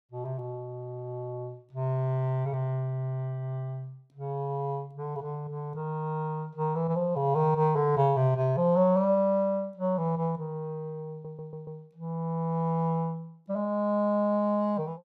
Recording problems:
audio stuttering; at 11 s

